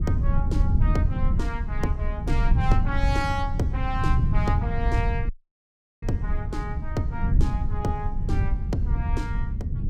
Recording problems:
low-frequency rumble; below 98 Hz, SNR -5 dB
audio cutting out; at 5.5 s for 0.5 s

